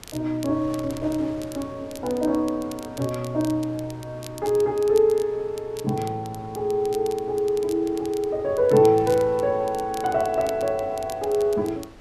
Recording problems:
wind on the microphone; below 1.3 kHz, SNR 22 dB
crackle; vinyl, SNR 20 dB

